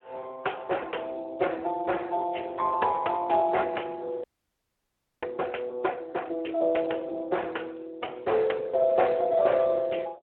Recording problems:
phone line; 280 Hz to 3.2 kHz, Speex
audio freezing; at 4 s for 1 s

